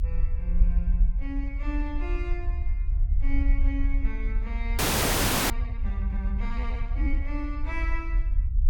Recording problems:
low-frequency rumble; below 54 Hz, SNR -8 dB
frozen audio; at 5 s for 0.5 s

